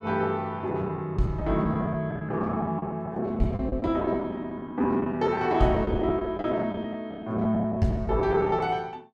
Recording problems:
lost packets; 14% of the sound replaced, filled with the last packet

